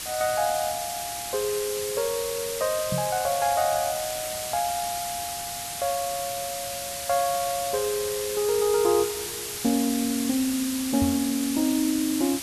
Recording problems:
background hiss; slope +1 dB per octave, SNR 4 dB
microphone bump; at 3 s and at 11 s; peak +1 dB vs average level

